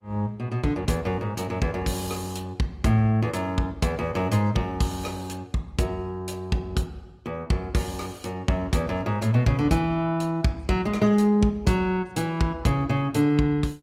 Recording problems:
lossy compression; Opus, log-spectral distance 2 dB, nothing above 16 kHz

